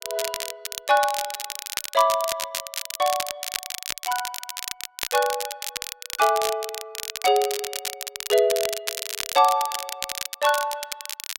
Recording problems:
crackling; vinyl, SNR 6 dB

